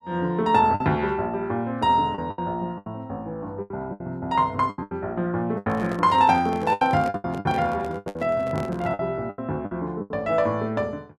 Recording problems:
packet loss; 12% of the sound replaced, filled with the last packet
handling noise; from 5.5 to 9 s; peak -7 dB vs average level

